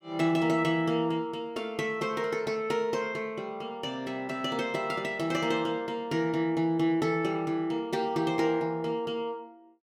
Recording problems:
none

